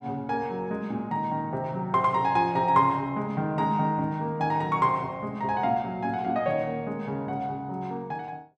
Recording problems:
none

